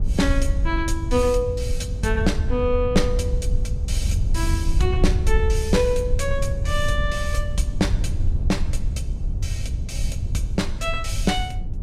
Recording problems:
rumble; below 80 Hz, SNR 0 dB

